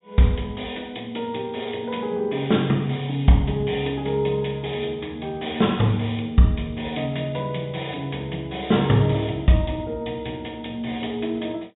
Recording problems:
treble missing; nothing above 4 kHz

